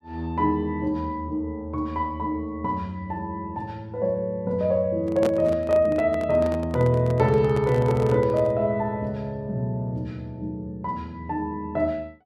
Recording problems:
microphone handling noise; from 5 to 8.5 s; peak 0 dB vs average level

